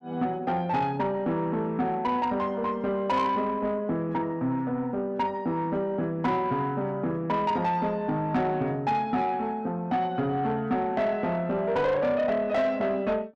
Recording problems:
distortion; soft clipping, signal-to-distortion ratio 12 dB

